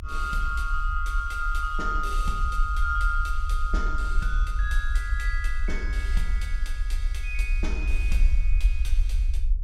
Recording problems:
rumble; below 50 Hz, SNR -3 dB

